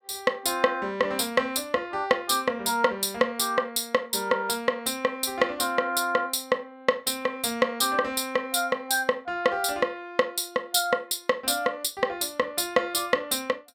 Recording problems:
none

